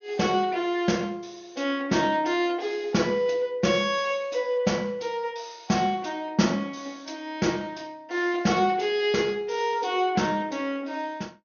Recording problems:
low-pass filter; nothing above 6.6 kHz

